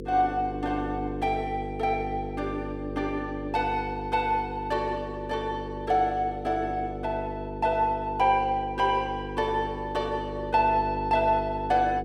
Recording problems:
electrical hum; 50 Hz, harmonics up to 500 Hz, SNR 8 dB

